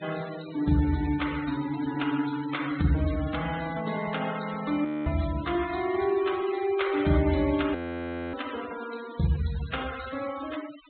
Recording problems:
treble missing; nothing above 4 kHz
noise reduction artefacts; signal-to-artefact ratio 14 dB
audio freezing; at 5 s and at 8 s for 0.5 s

